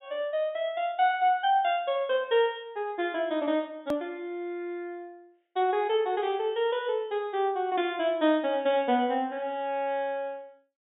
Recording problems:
low-pass filter; nothing above 4 kHz
click at an edit; at 4 s

